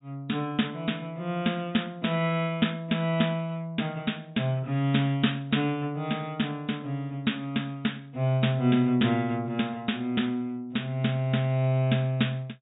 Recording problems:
low-pass filter; nothing above 4 kHz

